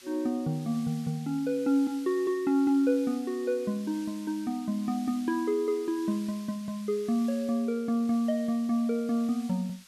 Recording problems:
background hiss; slope +3 dB per octave, SNR 21 dB

